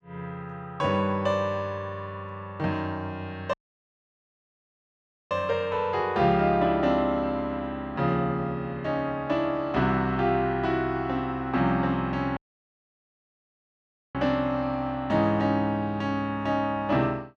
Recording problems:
dropout; at 3.5 s for 2 s and at 12 s for 2 s

